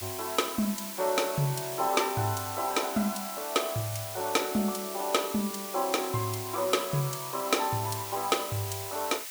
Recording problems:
hiss; slope +3 dB per octave, SNR 7 dB

